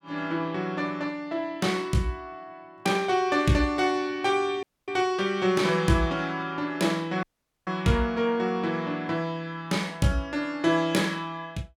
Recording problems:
dropout; at 4.5 s and at 7 s

